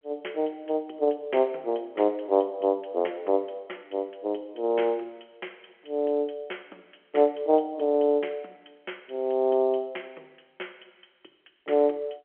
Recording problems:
telephone audio; 300 Hz to 3.3 kHz, G.711

